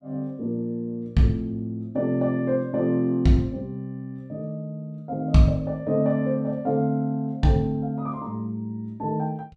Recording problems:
none

